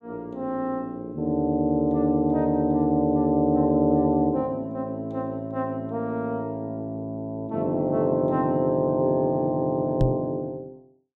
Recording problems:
microphone bump; at 10 s; peak +5 dB vs average level

